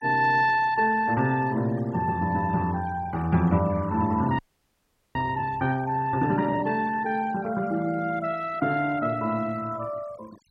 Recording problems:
noise reduction artefacts; signal-to-artefact ratio 21 dB
audio freezing; at 4.5 s for 1 s

